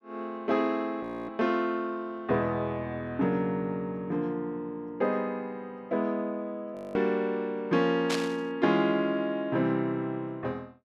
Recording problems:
frozen audio; at 1 s and at 7 s
static burst; at 8 s; peak +2 dB vs average level

